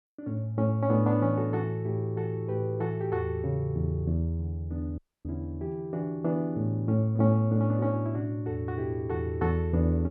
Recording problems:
audio cutting out; at 5 s

